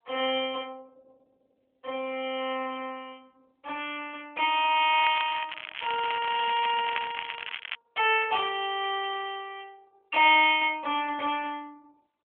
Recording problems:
telephone audio; 320 Hz to 3.3 kHz, AMR-NB
crackling; from 5 to 8 s; loose cable, SNR 9 dB

